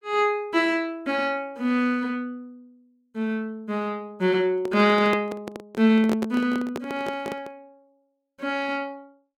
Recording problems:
handling noise; from 4.5 to 7.5 s; peak 0 dB vs average level

